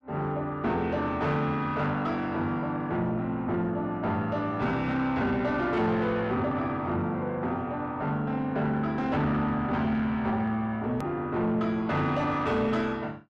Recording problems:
distorted audio; soft clipping, signal-to-distortion ratio 10 dB
hard cut with a click; at 11 s

